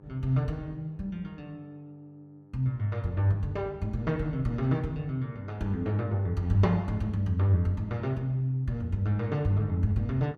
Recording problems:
electrical hum; 50 Hz, harmonics up to 1.4 kHz, SNR 27 dB

